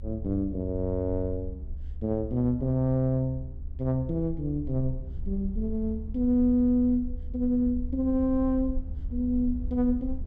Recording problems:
low-frequency rumble; below 72 Hz, SNR 10 dB

